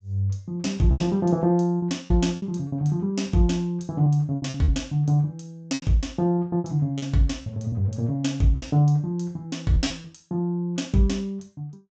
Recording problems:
low-pass filter; nothing above 8 kHz
lost packets; 8% of the sound replaced, filled with repeated pitch periods

